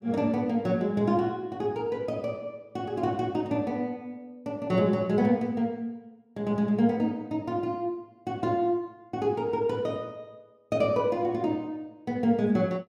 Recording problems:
none

